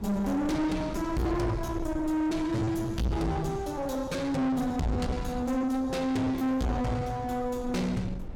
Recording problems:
distorted audio; soft clipping, signal-to-distortion ratio 7 dB
rumble; below 300 Hz, SNR 12 dB
lost packets; 11% of the sound replaced, filled with repeated pitch periods

